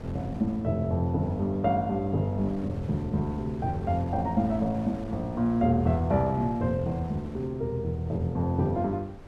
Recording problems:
wind on the microphone; below 380 Hz, SNR 17 dB

